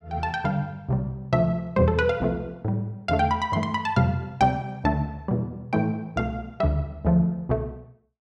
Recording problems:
none

